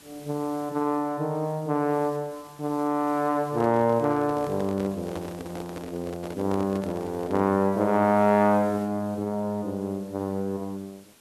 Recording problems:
background hiss; slope -2 dB per octave, SNR 25 dB
handling noise; from 3.5 to 7.5 s; peak -7 dB vs average level

